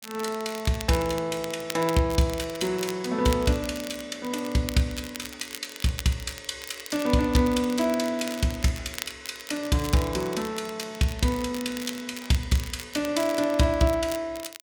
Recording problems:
crackle; vinyl, SNR 13 dB

